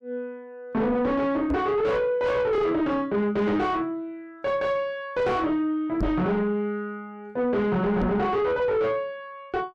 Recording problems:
distortion; soft clipping, signal-to-distortion ratio 7 dB
microphone thump; at 1.5 s, at 6 s and at 8 s; peak +3 dB vs average level

